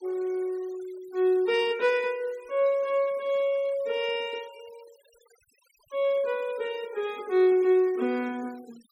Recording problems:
denoising artefacts; signal-to-artefact ratio 26 dB

